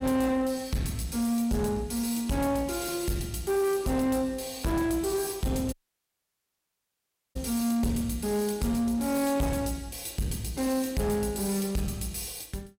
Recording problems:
distortion; soft clipping, signal-to-distortion ratio 10 dB
audio cutting out; at 5.5 s for 1.5 s

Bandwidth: 16 kHz